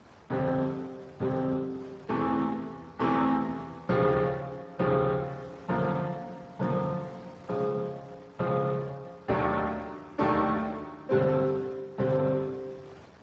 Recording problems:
lossy compression; Speex, log-spectral distance 3 dB
wind noise; below 1.4 kHz, SNR 24 dB

